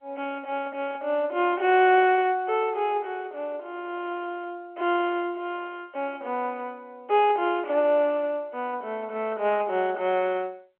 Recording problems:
telephone audio; 300 Hz to 3.3 kHz, G.711

